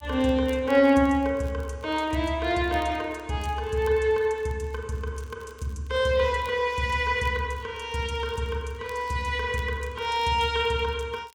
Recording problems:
crackling; vinyl, SNR 29 dB

